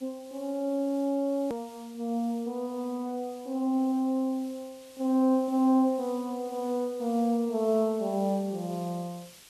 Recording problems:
background hiss; slope +1 dB per octave, SNR 23 dB
click at an edit; at 1.5 s

